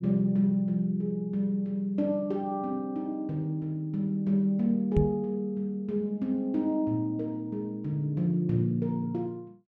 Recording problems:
microphone thump; at 5 s; peak +7 dB vs average level

